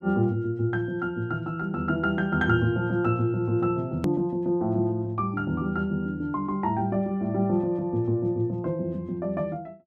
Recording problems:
edit click; at 4 s

